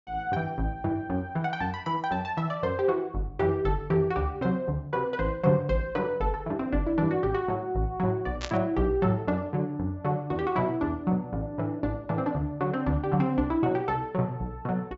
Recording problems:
low-pass filter; nothing above 8 kHz
burst of static; at 8.5 s; peak -2 dB vs average level

